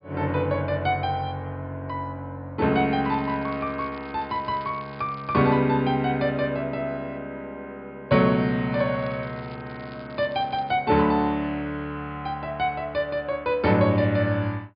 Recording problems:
treble cut off; nothing above 5.1 kHz
crackle; from 3 to 5.5 s and from 8.5 to 11 s; loose cable, SNR 27 dB

